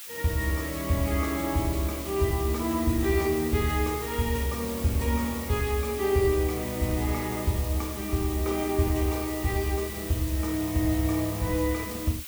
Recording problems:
background hiss; slope +3 dB per octave, SNR 10 dB

